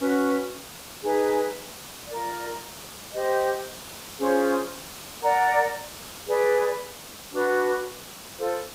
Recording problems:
hiss; slope -2 dB per octave, SNR 13 dB

